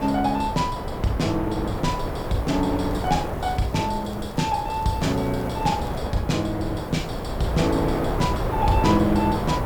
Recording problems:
hiss; slope +2 dB per octave, SNR 25 dB
wind on the microphone; below 700 Hz, SNR 4 dB
crackle; from 3 to 6 s; loose cable, SNR 27 dB

